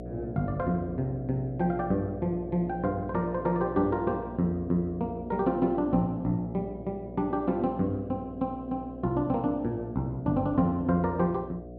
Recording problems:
mains hum; 60 Hz, harmonics up to 720 Hz, SNR 12 dB

